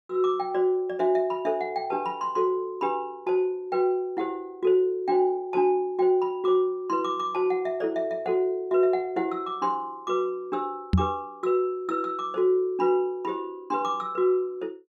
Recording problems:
knock on the microphone; at 11 s; peak +8 dB vs average level

